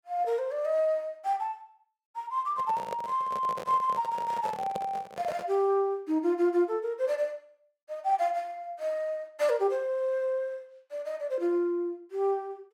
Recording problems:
handling noise; from 2.5 to 5.5 s; peak -3 dB vs average level

